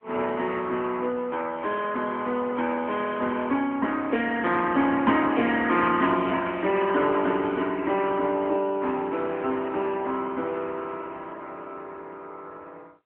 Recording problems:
telephone audio; 220 Hz to 3.3 kHz, AMR-NB

